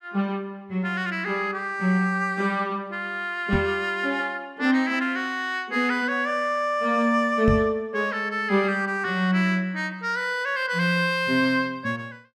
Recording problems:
knock on the microphone; at 3.5 s and at 7.5 s; peak +3 dB vs average level

